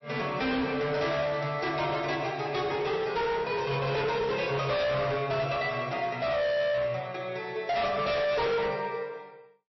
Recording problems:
lossy codec; MP3, log-spectral distance 3 dB, nothing above 5.7 kHz
distortion; hard clipping, signal-to-distortion ratio 7 dB

